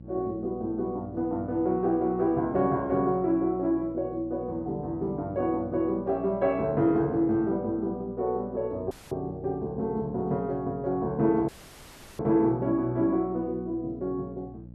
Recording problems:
hum; 60 Hz, harmonics up to 600 Hz, SNR 18 dB
dropout; at 9 s and at 11 s for 0.5 s

